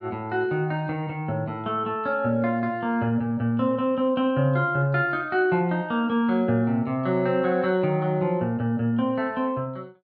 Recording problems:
none

